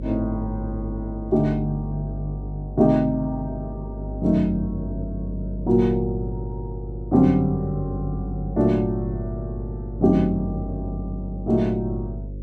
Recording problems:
hum; 50 Hz, harmonics up to 550 Hz, SNR 8 dB

